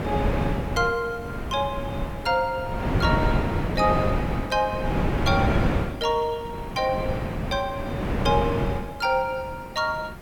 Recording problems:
hiss; slope +2 dB per octave, SNR 28 dB
wind on the microphone; below 470 Hz, SNR 0 dB

